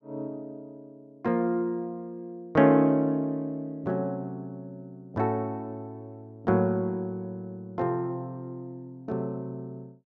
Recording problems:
none

